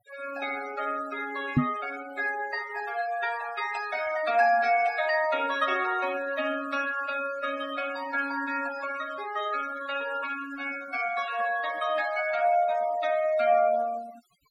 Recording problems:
noise reduction artefacts; signal-to-artefact ratio 15 dB
microphone bump; at 1.5 s; peak +9 dB vs average level

